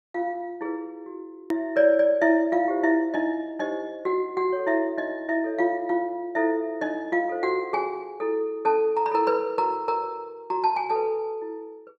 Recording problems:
hard cut with a click; at 1.5 s

